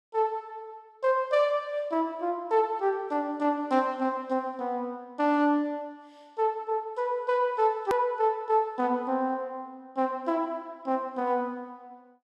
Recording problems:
hard cut with a click; at 8 s

